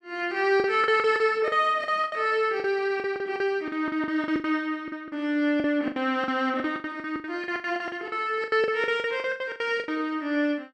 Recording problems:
packet loss; 18% of the sound replaced, filled with the last packet

